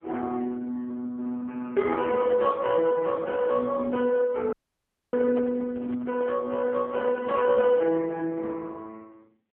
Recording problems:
telephone audio; 220 Hz to 3.4 kHz, AMR-NB
dropout; at 4.5 s for 0.5 s
handling noise; from 5 to 6.5 s; peak -13 dB vs average level

